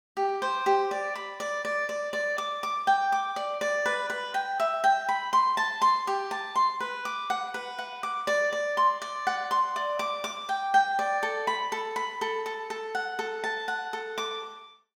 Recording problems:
none

